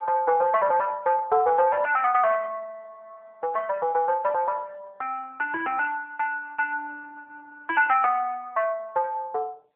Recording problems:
phone line; 340 Hz to 3 kHz, AMR-NB

